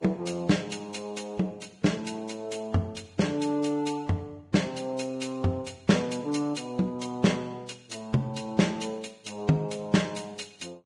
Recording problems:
codec artefacts; Vorbis, log-spectral distance 3 dB, nothing above 10.1 kHz

